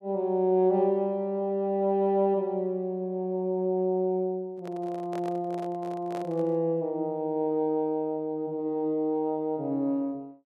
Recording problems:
handling noise; from 4.5 to 6.5 s; peak -9 dB vs average level

